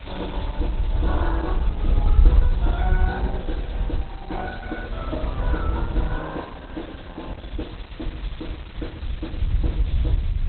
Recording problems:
lossy codec; Opus, log-spectral distance 2 dB, nothing above 4 kHz
background hiss; SNR 12 dB
rumble; below 68 Hz, SNR -7 dB

